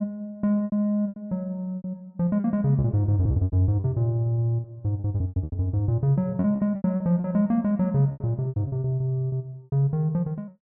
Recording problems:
lost packets; 14% of the sound replaced, filled with repeated pitch periods

